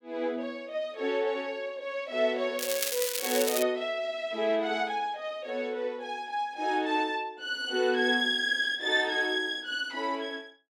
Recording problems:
crackling; from 2.5 to 3.5 s; loose cable, SNR 2 dB

